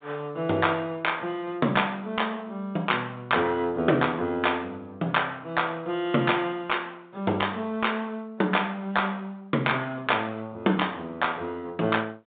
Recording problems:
telephone audio; 220 Hz to 3.7 kHz, G.726

